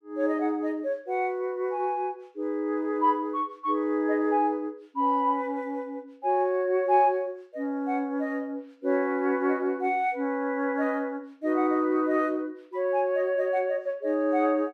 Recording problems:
none

